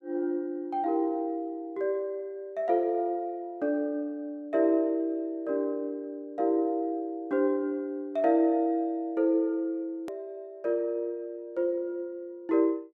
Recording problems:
hard cut with a click; at 10 s

